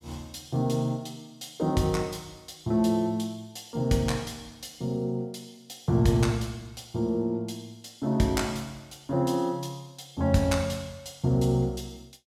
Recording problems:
none

